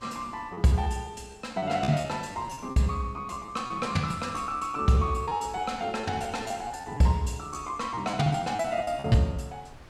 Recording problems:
wind on the microphone; below 1.1 kHz, SNR 23 dB
packet loss; 14% of the sound replaced, filled with repeated pitch periods

